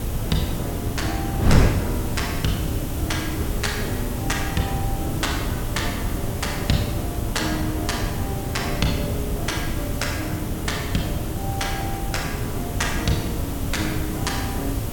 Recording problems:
hiss; SNR 9 dB
wind on the microphone; below 230 Hz, SNR 0 dB

